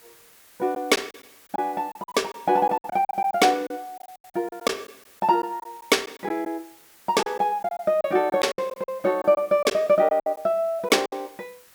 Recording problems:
background hiss; slope 0 dB per octave, SNR 27 dB
lost packets; 12% of the sound replaced, filled with silence

